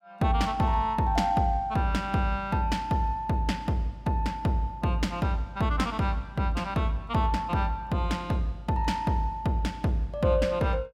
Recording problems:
none

